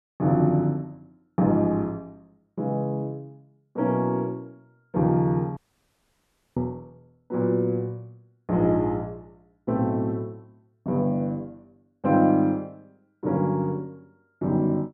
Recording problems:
audio cutting out; at 5.5 s for 1 s

